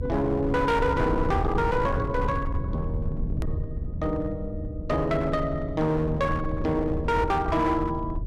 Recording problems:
distorted audio; hard clipping, uneven, signal-to-distortion ratio 10 dB
rumble; below 120 Hz, SNR 6 dB
click at an edit; at 3.5 s

